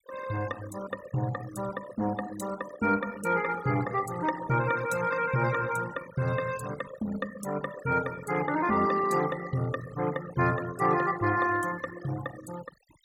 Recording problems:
denoising artefacts; signal-to-artefact ratio 14 dB

